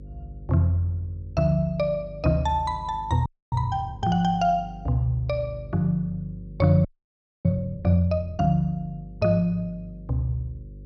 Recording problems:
electrical hum; 50 Hz, harmonics up to 550 Hz, SNR 18 dB
frozen audio; at 3.5 s and at 7 s for 0.5 s

